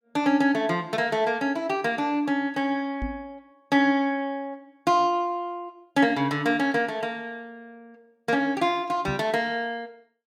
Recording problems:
microphone bump; at 3 s and at 9 s; peak -3 dB vs average level

